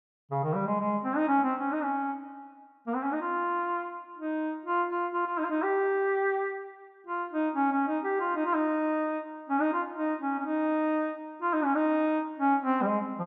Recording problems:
none

